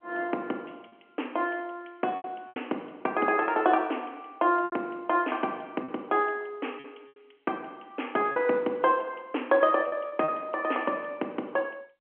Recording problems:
telephone audio; 220 Hz to 3.2 kHz, G.711
packet loss; 5% of the sound replaced, filled with repeated pitch periods

